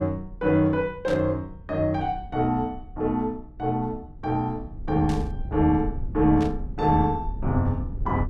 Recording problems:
rumble; below 80 Hz, SNR 12 dB
burst of static; at 1 s, at 5 s and at 6.5 s; peak -10 dB vs average level

